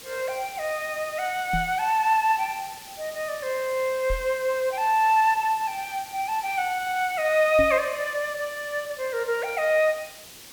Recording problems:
background hiss; slope 0 dB per octave, SNR 16 dB
microphone thump; at 1.5 s, at 4 s and at 7.5 s; peak -2 dB vs average level

